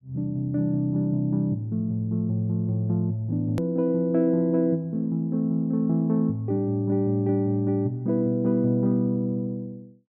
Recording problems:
hard cut with a click; at 3.5 s

